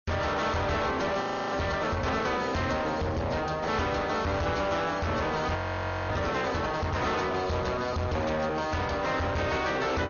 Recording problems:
codec artefacts; AAC, then MP2, log-spectral distance 5 dB, nothing above 6.7 kHz
distortion; soft clipping, signal-to-distortion ratio 7 dB
frozen audio; at 1 s and at 5.5 s for 0.5 s

